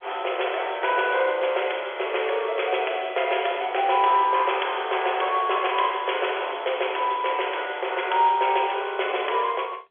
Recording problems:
telephone audio; 370 Hz to 3.4 kHz, G.711

